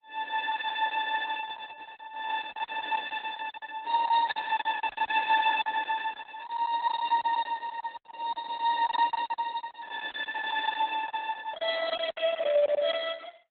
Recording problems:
codec artefacts; Opus, log-spectral distance 5 dB, nothing above 3.8 kHz
lost packets; 13% of the sound replaced, filled with silence

